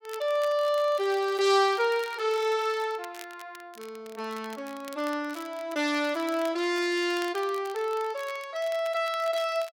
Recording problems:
crackle; vinyl, SNR 21 dB

